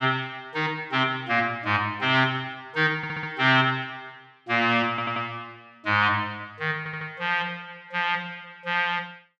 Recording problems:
audio stuttering; at 3 s, at 5 s and at 7 s

